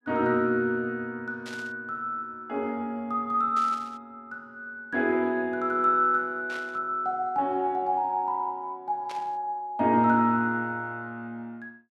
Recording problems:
burst of static; 4 times, first at 1.5 s; peak -10 dB vs average level

